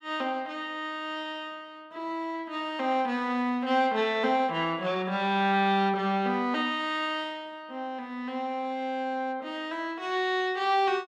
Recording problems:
none

